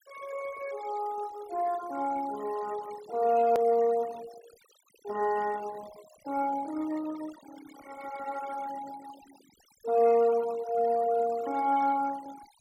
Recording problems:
noise reduction artefacts; signal-to-artefact ratio 20 dB
edit click; at 3.5 s

